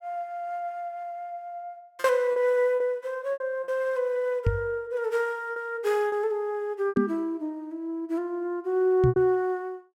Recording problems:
lost packets; 5% of the sound replaced, filled with repeated pitch periods
microphone bump; at 4.5 s, at 7 s and at 9 s; peak +6 dB vs average level

